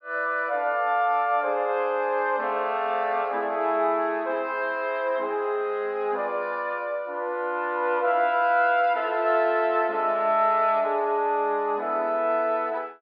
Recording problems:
treble cut off; nothing above 5.5 kHz

